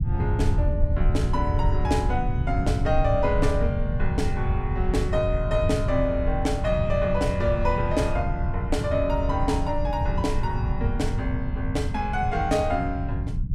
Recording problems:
rumble; below 110 Hz, SNR 1 dB

